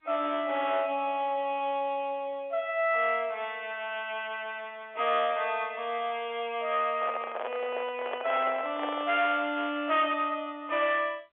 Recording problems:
telephone audio; 320 Hz to 3.5 kHz, G.711
distorted audio; hard clipping, uneven, signal-to-distortion ratio 12 dB
handling noise; from 7 to 9 s; peak -1 dB vs average level

